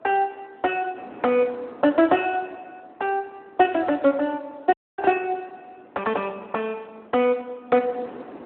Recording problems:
telephone audio; 220 Hz to 3.3 kHz, Speex
wind on the microphone; below 770 Hz, SNR 23 dB
audio cutting out; at 4.5 s

